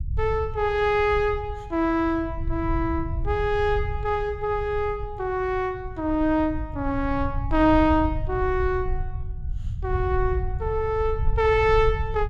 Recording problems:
low-frequency rumble; below 82 Hz, SNR 8 dB

